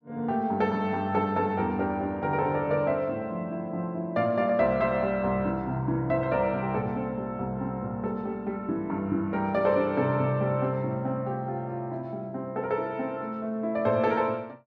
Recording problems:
none

